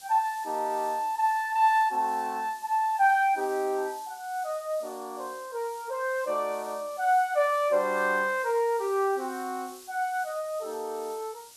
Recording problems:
hiss; SNR 20 dB

